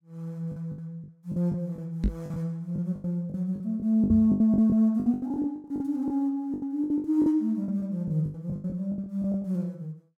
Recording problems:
lost packets; 18% of the sound replaced, filled with the last packet
knock on the microphone; at 2 s and at 4 s; peak +4 dB vs average level

